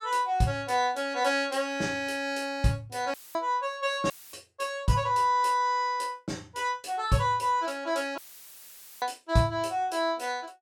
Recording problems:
dropout; at 3 s, at 4 s and at 8 s for 1 s; filled with static

